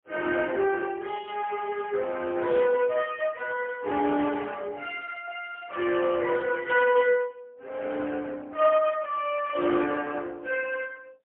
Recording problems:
telephone audio; 260 Hz to 3.4 kHz, AMR-NB, then MP3

